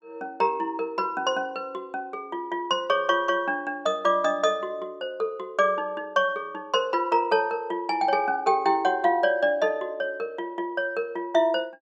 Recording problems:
none

